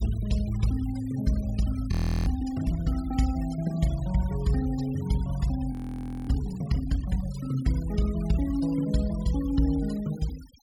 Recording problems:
noise reduction artefacts; signal-to-artefact ratio 18 dB
frozen audio; at 2 s and at 5.5 s for 0.5 s

